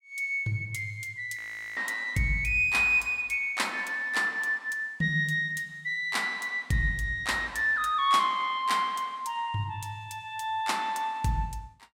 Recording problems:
audio freezing; at 1.5 s

